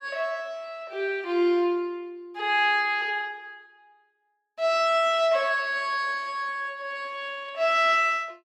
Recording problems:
none

